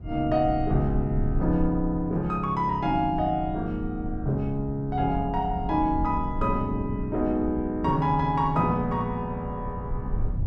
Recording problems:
rumble; below 90 Hz, SNR 10 dB

